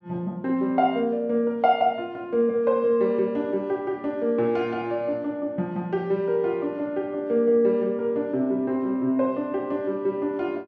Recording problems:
none

